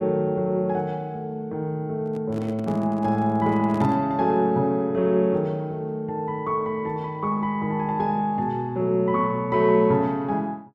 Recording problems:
microphone handling noise; from 2 to 4 s; peak -8 dB vs average level

